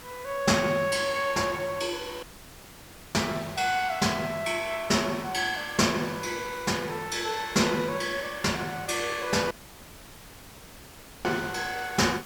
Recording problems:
background hiss; slope -2 dB per octave, SNR 17 dB
audio cutting out; at 2 s for 1 s and at 9.5 s for 1.5 s

